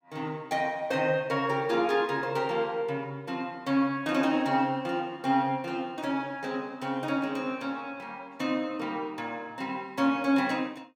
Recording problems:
none

